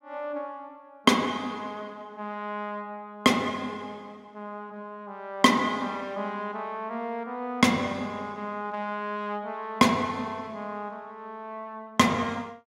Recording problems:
none

